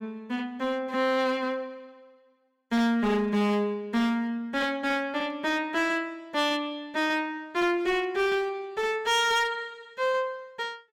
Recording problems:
distortion; hard clipping, uneven, signal-to-distortion ratio 10 dB

